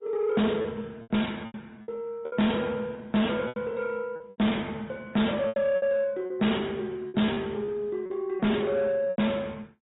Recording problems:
low-pass filter; nothing above 3.8 kHz
codec artefacts; Opus, log-spectral distance 2 dB
distorted audio; soft clipping, signal-to-distortion ratio 7 dB
lost packets; 8% of the sound replaced, filled with repeated pitch periods

